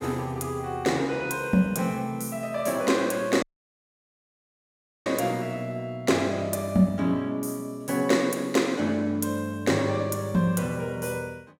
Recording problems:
audio cutting out; at 3.5 s for 1.5 s

